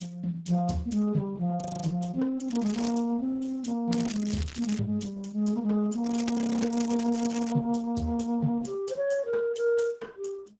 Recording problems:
codec artefacts; Speex, then Opus, log-spectral distance 4 dB, nothing above 7.3 kHz
frozen audio; at 1.5 s and at 6.5 s
crackling; at 2.5 s, at 4 s and from 6 to 7.5 s; loose cable, SNR 13 dB

